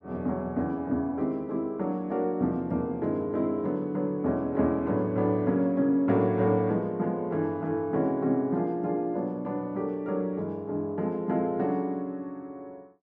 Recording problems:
none

